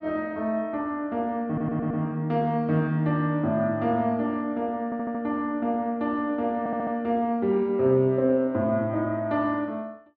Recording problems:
audio stuttering; at 1.5 s, at 5 s and at 6.5 s

